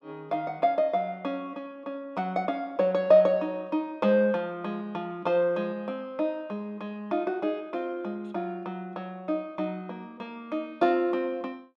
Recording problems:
none

